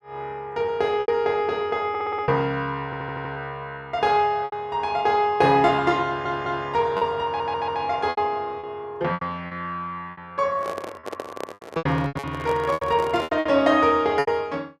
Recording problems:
lost packets; 9% of the sound replaced, filled with repeated pitch periods
stutter; 4 times, first at 2 s
microphone handling noise; from 11 to 13 s; peak -5 dB vs average level

